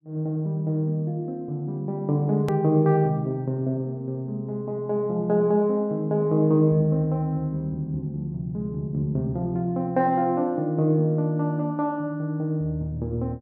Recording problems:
edit click; at 2.5 s

